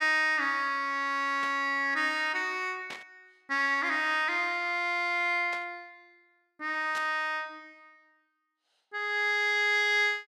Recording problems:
burst of static; 4 times, first at 1.5 s; peak -9 dB vs average level

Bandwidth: 14.5 kHz